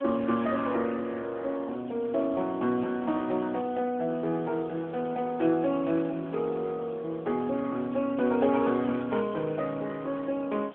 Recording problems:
telephone audio; 150 Hz to 3.4 kHz, AMR-NB
hiss; SNR 21 dB

